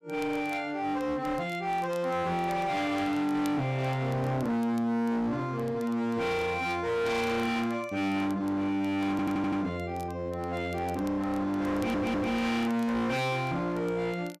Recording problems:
distortion; hard clipping, uneven, signal-to-distortion ratio 7 dB
crackle; vinyl, SNR 27 dB
audio stuttering; at 9 s and at 12 s

